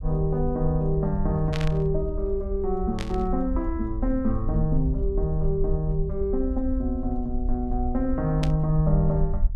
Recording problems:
low-frequency rumble; below 58 Hz, SNR 5 dB
static burst; at 1.5 s, at 3 s and at 8.5 s; peak -3 dB vs average level

